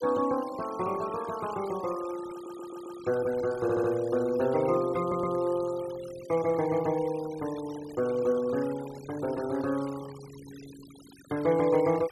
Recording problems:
denoising artefacts; signal-to-artefact ratio 18 dB
stutter; at 2.5 s, at 3.5 s and at 5 s

